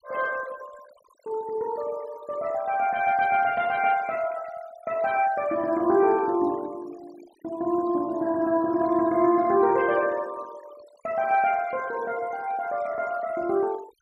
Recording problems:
noise reduction artefacts; signal-to-artefact ratio 22 dB

